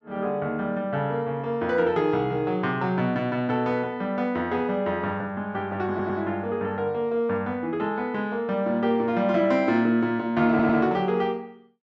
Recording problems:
audio stuttering; at 6 s and at 10 s

